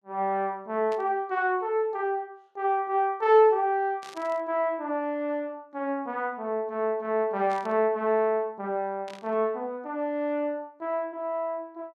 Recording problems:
burst of static; 4 times, first at 1 s; peak -14 dB vs average level

